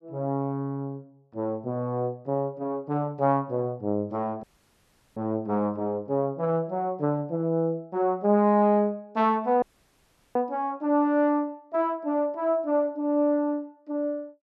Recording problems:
audio cutting out; at 4.5 s for 0.5 s and at 9.5 s for 0.5 s

